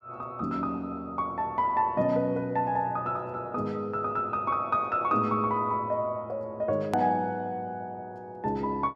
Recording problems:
edit click; at 7 s

